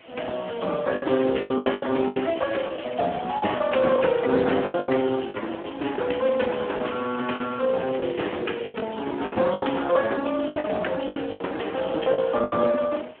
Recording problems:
phone line; 220 Hz to 3.3 kHz, Speex
hiss; SNR 27 dB
lost packets; 11% of the sound replaced, filled with the last packet
crackle; from 1 to 4.5 s and from 6 to 8.5 s; loose cable, SNR 20 dB

